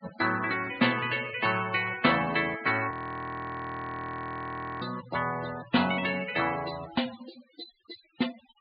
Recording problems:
low-pass filter; nothing above 4.5 kHz
denoising artefacts; signal-to-artefact ratio 15 dB
audio freezing; at 3 s for 2 s

